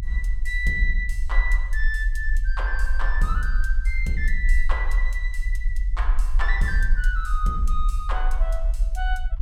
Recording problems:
low-frequency rumble; below 42 Hz, SNR -3 dB

